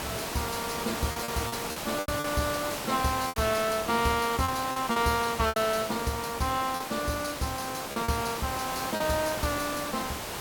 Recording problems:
hiss; slope -3 dB per octave, SNR 4 dB
lost packets; 7% of the sound replaced, filled with repeated pitch periods

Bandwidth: 18 kHz